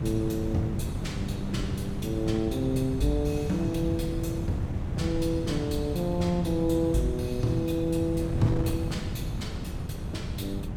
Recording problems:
wind noise; below 190 Hz, SNR 3 dB

